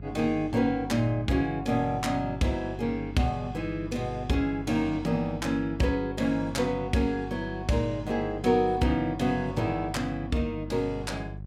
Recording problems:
mains hum; 50 Hz, harmonics up to 400 Hz, SNR 12 dB

